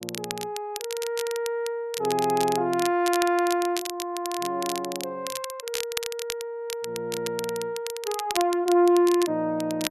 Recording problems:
crackle; vinyl, SNR 9 dB

